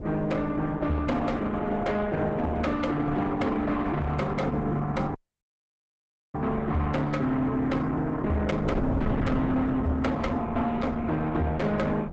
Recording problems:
codec artefacts; Opus, log-spectral distance 2 dB, nothing above 8 kHz
distorted audio; soft clipping, signal-to-distortion ratio 10 dB
wind noise; below 350 Hz, SNR 9 dB
dropout; at 5 s for 1 s

